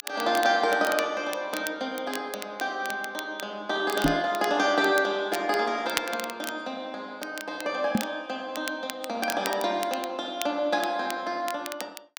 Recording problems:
crackle; vinyl, SNR 11 dB
microphone bump; at 4 s and at 8 s; peak +8 dB vs average level

